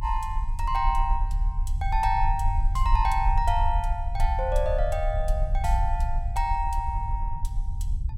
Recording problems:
low-frequency rumble; below 58 Hz, SNR 1 dB

